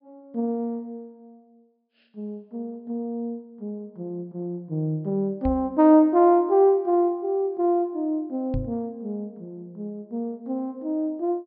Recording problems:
treble cut off; nothing above 5.5 kHz
knock on the microphone; at 5.5 s and at 8.5 s; peak -2 dB vs average level

